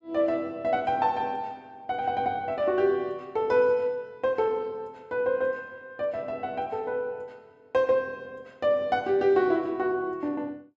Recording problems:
none

